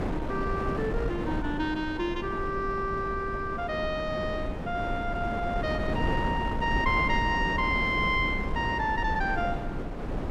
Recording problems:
wind on the microphone; below 410 Hz, SNR 4 dB

